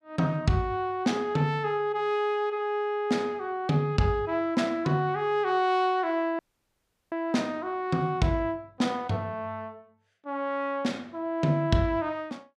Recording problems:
audio cutting out; at 6.5 s for 0.5 s

